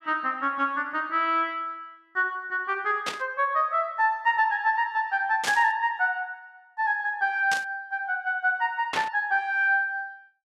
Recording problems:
static burst; 4 times, first at 3 s; peak 0 dB vs average level

